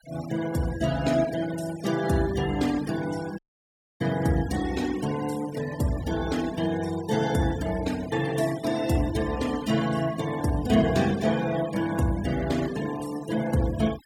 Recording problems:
noise reduction artefacts; signal-to-artefact ratio 14 dB
audio cutting out; at 3.5 s for 0.5 s

